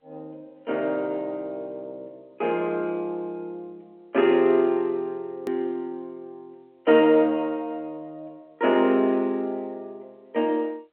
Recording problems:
phone line; 220 Hz to 3.3 kHz, G.711
edit click; at 5.5 s

